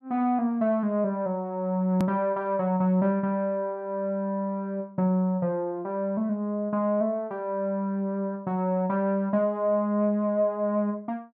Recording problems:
edit click; at 2 s

